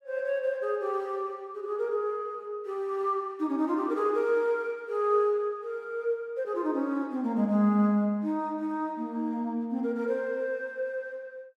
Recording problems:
none

